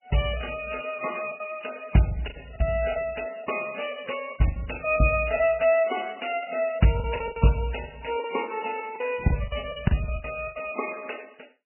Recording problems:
lossy codec; MP3, log-spectral distance 10 dB, nothing above 2.7 kHz
lost packets; 14% of the sound replaced, filled with the last packet

